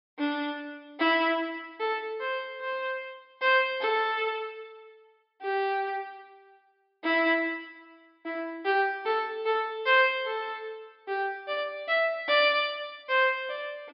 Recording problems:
treble missing; nothing above 5.5 kHz

